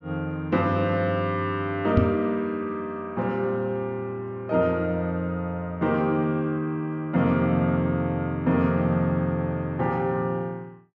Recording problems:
low-pass filter; nothing above 6.8 kHz
microphone bump; at 2 s; peak +8 dB vs average level

